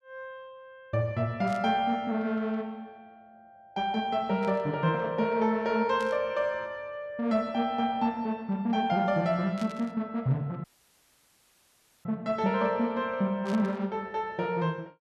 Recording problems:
burst of static; 5 times, first at 1.5 s; peak -11 dB vs average level
dropout; at 11 s for 1.5 s

